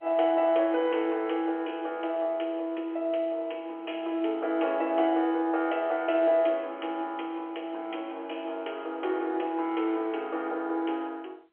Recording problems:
phone line; 280 Hz to 3.3 kHz, G.711

